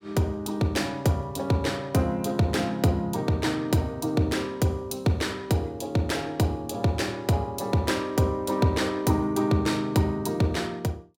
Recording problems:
none

